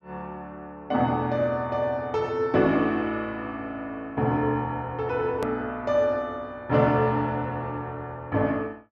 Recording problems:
treble cut off; nothing above 8 kHz
hard cut with a click; at 5.5 s

